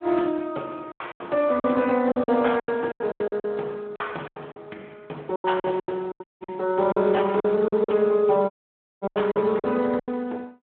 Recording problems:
phone line; 260 Hz to 3.4 kHz, Speex
lost packets; 15% of the sound replaced, filled with silence
dropout; at 6 s and at 8.5 s for 0.5 s

